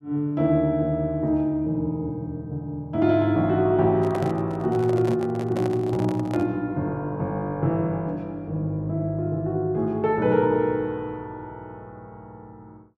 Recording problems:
handling noise; from 4 to 6.5 s; peak -4 dB vs average level

